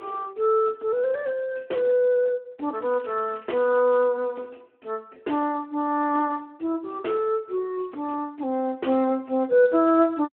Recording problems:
phone line; 220 Hz to 3.2 kHz, Speex
crackle; from 3 to 4 s; loose cable, SNR 27 dB

